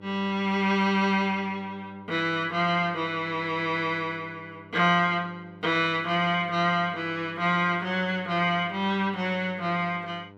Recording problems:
hum; 50 Hz, harmonics up to 1.9 kHz, SNR 23 dB

